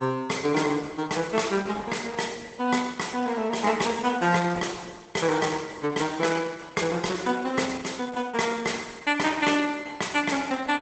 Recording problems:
lossy compression; Opus, log-spectral distance 5 dB, nothing above 8 kHz

